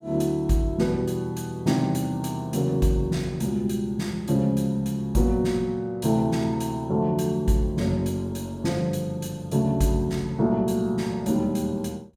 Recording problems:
none

